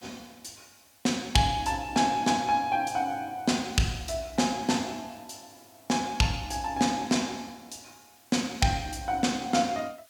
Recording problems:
background hiss; slope +1 dB per octave, SNR 29 dB

